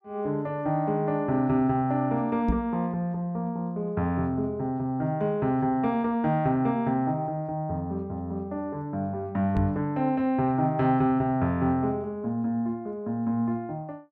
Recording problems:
knock on the microphone; at 2.5 s and at 9.5 s; peak +4 dB vs average level

